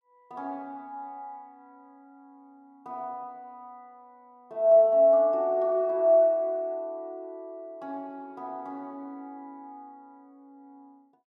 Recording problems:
none

